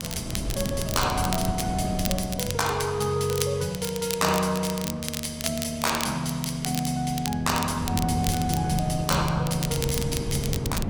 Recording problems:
wind noise; below 240 Hz, SNR 6 dB
crackling; vinyl, SNR 8 dB

